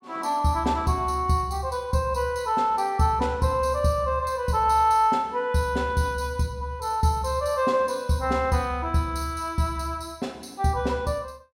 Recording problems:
none

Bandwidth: 16 kHz